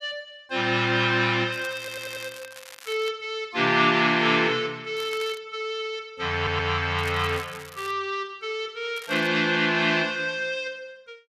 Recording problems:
crackling; 4 times, first at 1.5 s; loose cable, SNR 19 dB
stutter; at 2 s and at 6.5 s

